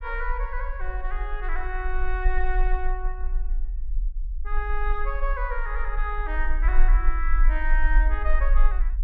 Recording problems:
low-frequency rumble; below 40 Hz, strongest tone 18 Hz, SNR -4 dB

